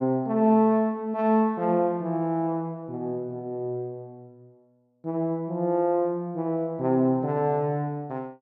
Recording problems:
none

